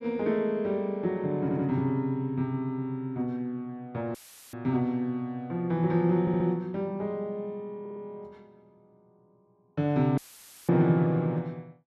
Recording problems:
audio stuttering; at 1.5 s, at 6 s and at 8 s
dropout; at 4 s and at 10 s for 0.5 s; filled with static

